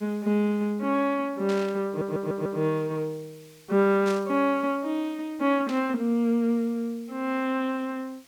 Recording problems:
hiss; slope +1 dB per octave, SNR 28 dB
burst of static; at 1.5 s, at 4 s and at 5.5 s; peak -9 dB vs average level
stutter; at 2 s

